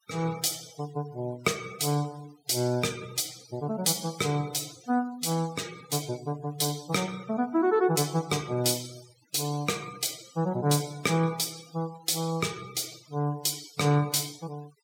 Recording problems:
noise reduction artefacts; signal-to-artefact ratio 18 dB

